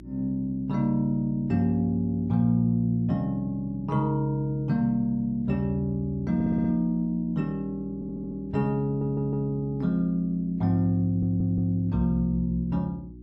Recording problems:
electrical hum; 60 Hz, harmonics up to 360 Hz, SNR 18 dB
stutter; 4 times, first at 6.5 s

